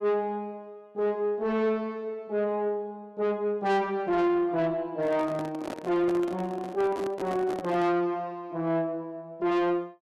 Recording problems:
distorted audio; soft clipping, signal-to-distortion ratio 11 dB
handling noise; from 5 to 8 s; peak -4 dB vs average level

